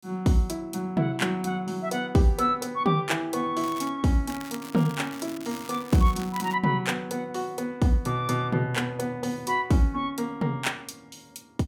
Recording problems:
crackling; at 3.5 s and from 4.5 to 6.5 s; loose cable, SNR 17 dB

